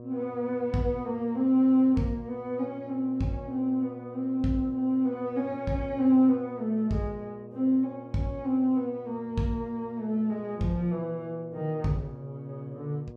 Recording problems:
hum; 60 Hz, harmonics up to 1.1 kHz, SNR 18 dB

